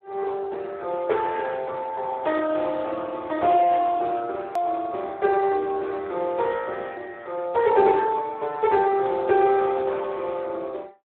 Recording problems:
telephone audio; 320 Hz to 3.6 kHz, Speex
hard cut with a click; at 4.5 s

